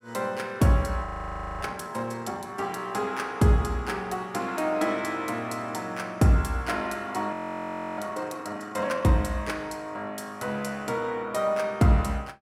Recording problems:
audio freezing; at 1 s for 0.5 s and at 7.5 s for 0.5 s

